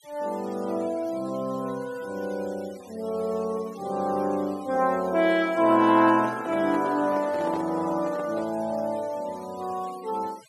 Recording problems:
noise reduction artefacts; signal-to-artefact ratio 22 dB
handling noise; from 6 to 8.5 s; peak -6 dB vs average level

